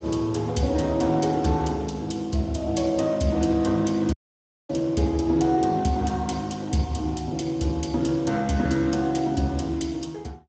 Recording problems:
codec artefacts; Speex, log-spectral distance 3 dB, nothing above 7.6 kHz
dropout; at 4 s for 0.5 s

